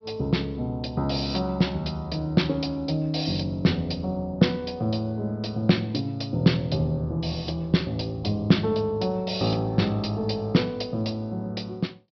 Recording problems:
treble missing; nothing above 5.5 kHz

